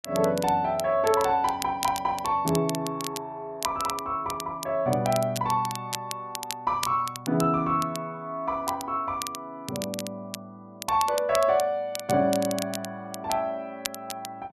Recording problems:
crackle; vinyl, SNR 11 dB

